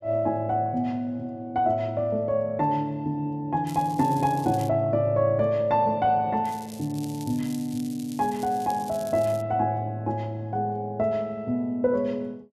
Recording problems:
crackle; from 3.5 to 4.5 s and from 6.5 to 9.5 s; loose cable, SNR 19 dB

